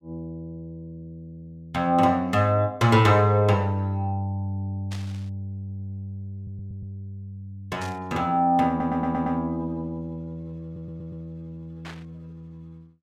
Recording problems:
burst of static; at 5 s, at 8 s and at 12 s; peak -11 dB vs average level
stutter; 4 times, first at 5.5 s

